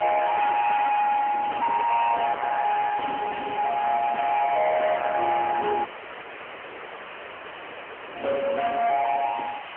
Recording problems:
phone line; 950 Hz to 2.9 kHz, AMR-NB
distortion; soft clipping, signal-to-distortion ratio 5 dB
hiss; SNR 13 dB
dropout; at 6 s for 2.5 s

